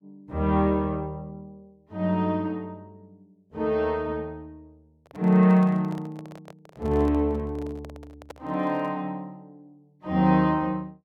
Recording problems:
microphone handling noise; from 5 to 9 s; peak -12 dB vs average level

